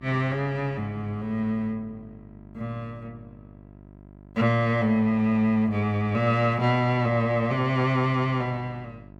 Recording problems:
hum; 50 Hz, harmonics up to 1.4 kHz, SNR 23 dB

